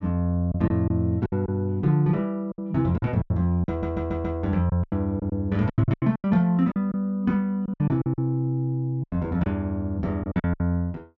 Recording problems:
treble cut off; nothing above 7.5 kHz
packet loss; 12% of the sound replaced, filled with silence
audio stuttering; at 3.5 s

